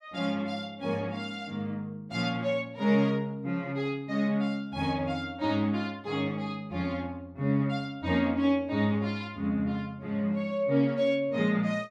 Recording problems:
none

